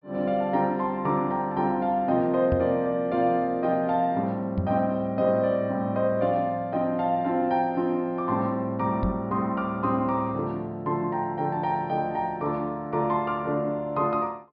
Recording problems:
treble missing; nothing above 5.5 kHz
knock on the microphone; at 2.5 s, at 4.5 s and at 9 s; peak +2 dB vs average level

